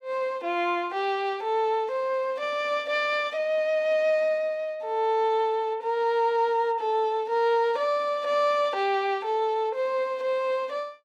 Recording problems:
none

